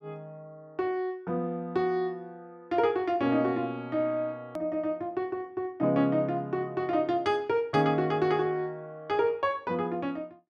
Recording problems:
click at an edit; at 4.5 s

